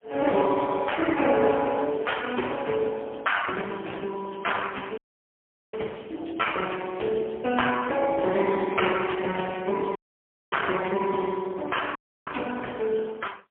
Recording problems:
telephone audio; 260 Hz to 3.2 kHz, AMR-NB, then MP3
audio cutting out; at 5 s for 1 s, at 10 s for 0.5 s and at 12 s

